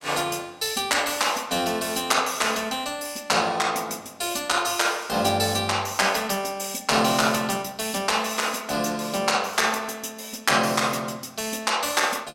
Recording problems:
none

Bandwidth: 16 kHz